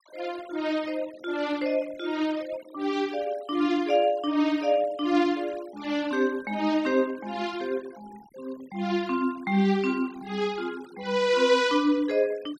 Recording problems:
denoising artefacts; signal-to-artefact ratio 22 dB

